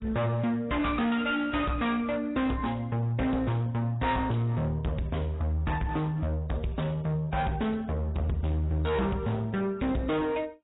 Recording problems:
codec artefacts; AAC, log-spectral distance 2 dB, nothing above 3.8 kHz
distorted audio; hard clipping, uneven, signal-to-distortion ratio 6 dB

